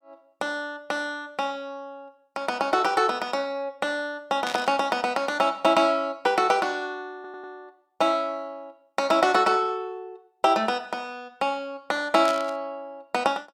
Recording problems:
burst of static; at 4.5 s and at 12 s; peak -4 dB vs average level
audio stuttering; at 7 s

